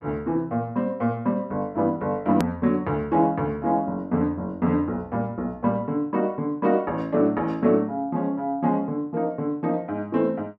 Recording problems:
click at an edit; at 2.5 s

